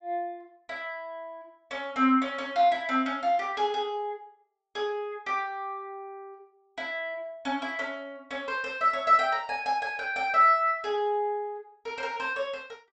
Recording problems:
low-pass filter; nothing above 8 kHz

